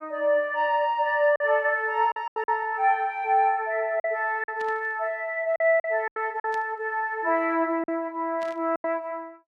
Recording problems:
packet loss; 6% of the sound replaced, filled with silence
burst of static; at 4.5 s, at 6.5 s and at 8.5 s; peak -14 dB vs average level

